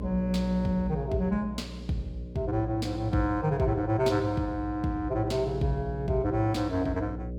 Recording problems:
hum; 60 Hz, harmonics up to 600 Hz, SNR 10 dB

